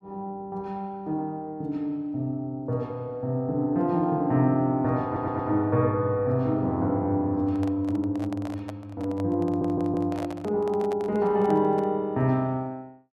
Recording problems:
stutter; at 5 s and at 9.5 s
microphone handling noise; from 7.5 to 12 s; peak -7 dB vs average level

